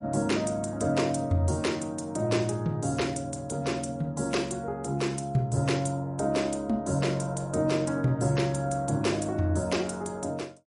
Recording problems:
lossy codec; MP3, log-spectral distance 3 dB, nothing above 10.4 kHz

